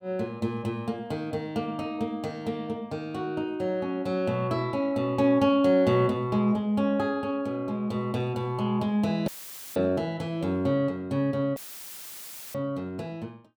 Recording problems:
audio cutting out; at 9.5 s and at 12 s for 1 s; filled with static

